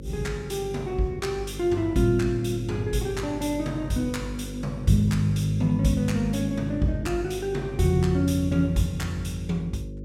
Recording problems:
mains hum; 50 Hz, harmonics up to 550 Hz, SNR 12 dB

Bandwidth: 16 kHz